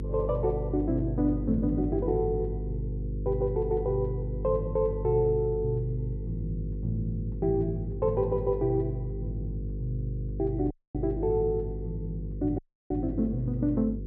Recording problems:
hum; 50 Hz, harmonics up to 500 Hz, SNR 6 dB
audio cutting out; at 11 s and at 13 s

